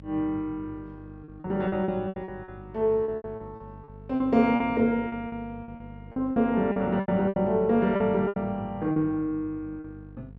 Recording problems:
electrical hum; 50 Hz, harmonics up to 500 Hz, SNR 19 dB
packet loss; 13% of the sound replaced, filled with repeated pitch periods

